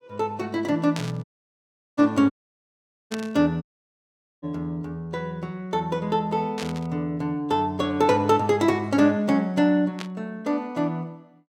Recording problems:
burst of static; 4 times, first at 1 s; peak -4 dB vs average level
dropout; at 1 s for 0.5 s, at 2.5 s for 1 s and at 3.5 s for 1 s

